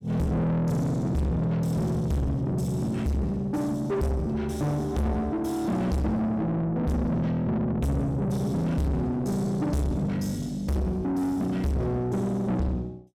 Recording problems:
distortion; soft clipping, signal-to-distortion ratio 6 dB

